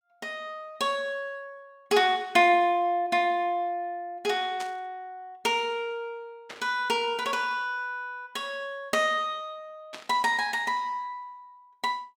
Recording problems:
burst of static; at 4.5 s, at 6.5 s and at 10 s; peak -8 dB vs average level

